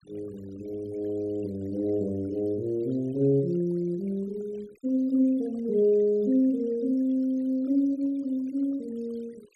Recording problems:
noise reduction artefacts; signal-to-artefact ratio 28 dB

